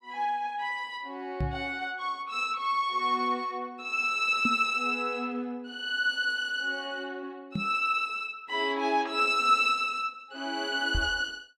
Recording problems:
microphone thump; 4 times, first at 1.5 s; peak +2 dB vs average level

